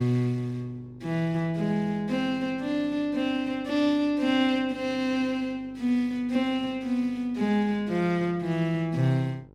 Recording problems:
electrical hum; 50 Hz, harmonics up to 1 kHz, SNR 26 dB

